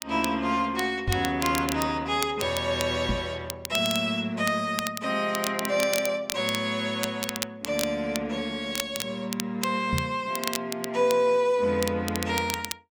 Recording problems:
crackling; vinyl, SNR 8 dB
knock on the microphone; at 1 s, at 3 s and at 10 s; peak +2 dB vs average level

